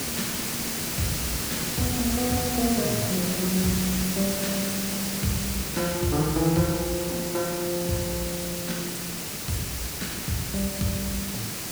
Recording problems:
background hiss; SNR 0 dB

